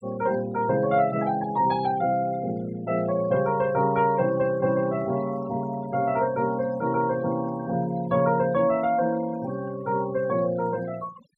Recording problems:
denoising artefacts; signal-to-artefact ratio 21 dB

